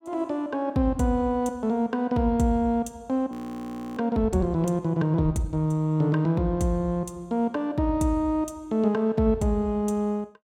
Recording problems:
frozen audio; at 3.5 s for 0.5 s

